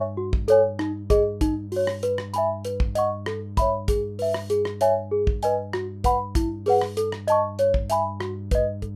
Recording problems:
electrical hum; 50 Hz, harmonics up to 400 Hz, SNR 13 dB

